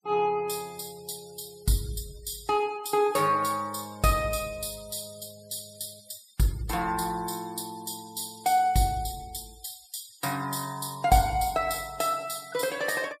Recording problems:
noise reduction artefacts; signal-to-artefact ratio 22 dB

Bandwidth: 15.5 kHz